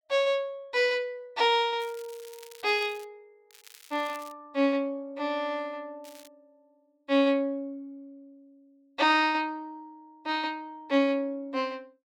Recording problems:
crackling; from 2 to 3 s, at 3.5 s and at 6 s; loose cable, SNR 23 dB

